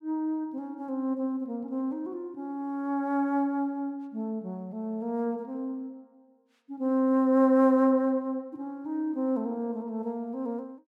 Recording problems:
none

